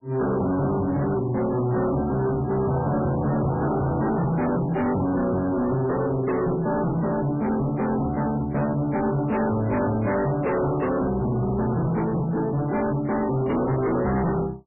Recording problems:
codec artefacts; MP3, log-spectral distance 3 dB, nothing above 2.8 kHz
distortion; hard clipping, uneven, signal-to-distortion ratio 6 dB

